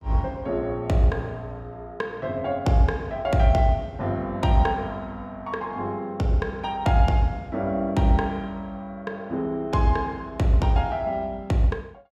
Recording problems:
none

